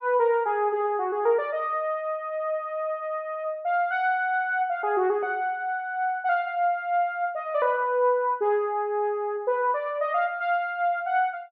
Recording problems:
none

